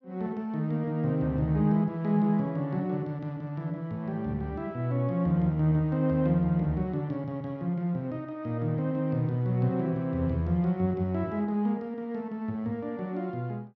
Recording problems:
none

